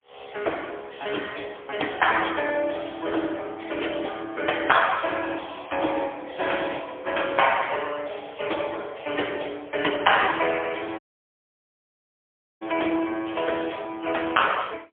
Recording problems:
telephone audio; 280 Hz to 3.4 kHz, AMR-NB, then MP3
dropout; at 11 s for 1.5 s

